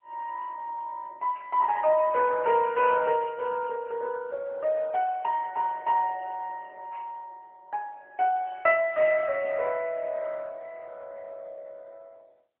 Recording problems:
phone line; 220 Hz to 3.3 kHz, AMR-NB

